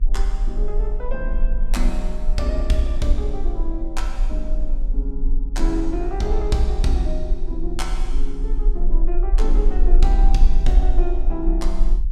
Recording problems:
hum; 50 Hz, harmonics up to 450 Hz, SNR 20 dB
low-frequency rumble; below 36 Hz, strongest tone 20 Hz, SNR -3 dB

